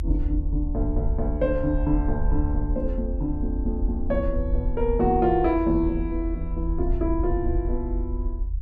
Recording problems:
low-frequency rumble; below 64 Hz, strongest tone 44 Hz, SNR 3 dB

